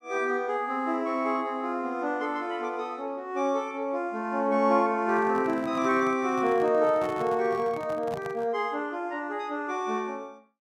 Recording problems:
handling noise; from 5 to 8.5 s; peak -8 dB vs average level

